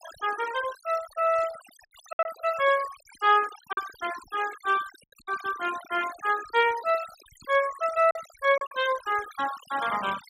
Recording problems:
noise reduction artefacts; signal-to-artefact ratio 16 dB
packet loss; 3% of the sound replaced, filled with silence

